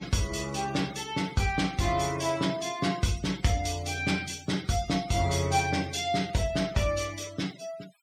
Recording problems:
denoising artefacts; signal-to-artefact ratio 18 dB

